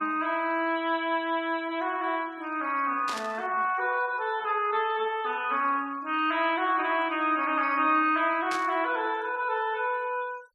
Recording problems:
denoising artefacts; signal-to-artefact ratio 26 dB
static burst; at 3 s and at 8.5 s; peak -5 dB vs average level

